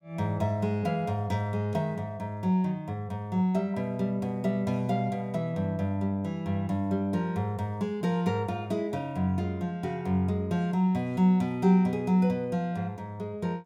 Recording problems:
none

